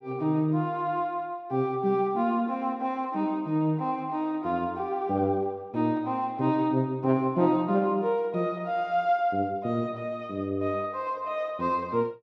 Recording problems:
none

